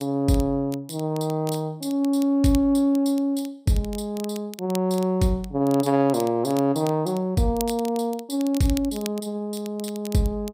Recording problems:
crackle; vinyl, SNR 18 dB

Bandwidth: 15.5 kHz